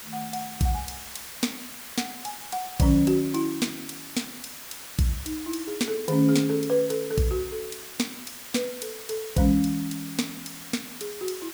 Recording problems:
hiss; slope 0 dB per octave, SNR 11 dB

